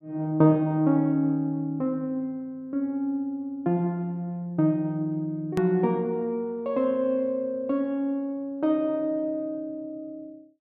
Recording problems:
click at an edit; at 5.5 s

